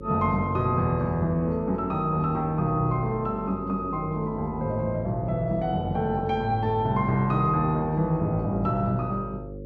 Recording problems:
hum; 50 Hz, harmonics up to 550 Hz, SNR 12 dB

